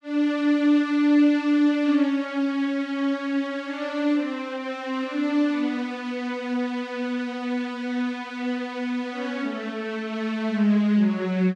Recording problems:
none

